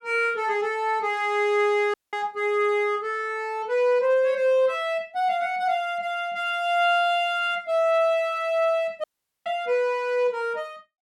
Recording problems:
dropout; at 2 s and at 9 s

